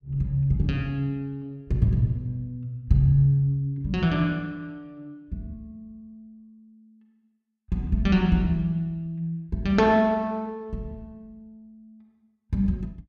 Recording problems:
none

